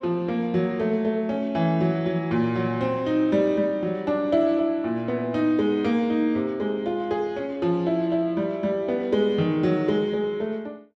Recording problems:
none

